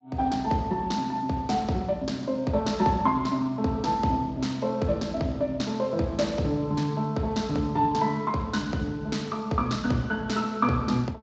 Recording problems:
codec artefacts; Speex, log-spectral distance 2 dB, nothing above 7.3 kHz

